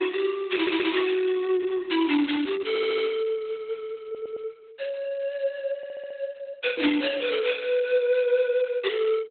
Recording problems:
codec artefacts; Opus, log-spectral distance 4 dB, nothing above 4 kHz
audio stuttering; 4 times, first at 0.5 s

